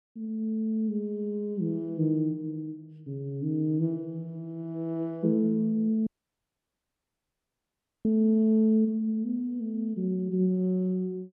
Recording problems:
dropout; at 6 s for 2 s

